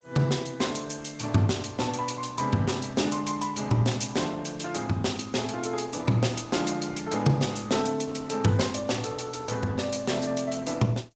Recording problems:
treble cut off; nothing above 7.6 kHz
lossy codec; Opus, log-spectral distance 6 dB

